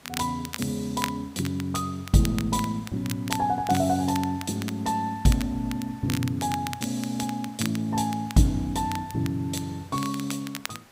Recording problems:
hiss; slope -3 dB per octave, SNR 25 dB
crackle; vinyl, SNR 12 dB

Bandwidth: 15.5 kHz